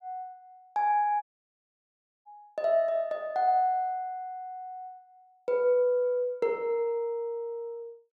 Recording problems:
dropout; at 1 s for 1 s

